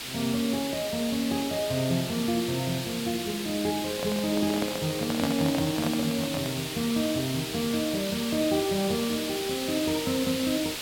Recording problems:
background hiss; SNR 5 dB
microphone handling noise; from 4 to 6.5 s; peak +2 dB vs average level

